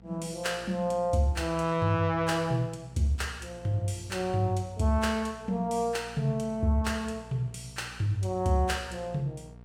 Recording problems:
electrical hum; 60 Hz, harmonics up to 1.1 kHz, SNR 21 dB

